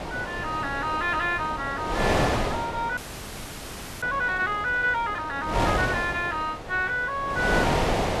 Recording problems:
wind on the microphone; below 1.1 kHz, SNR 2 dB
frozen audio; at 3 s for 1 s

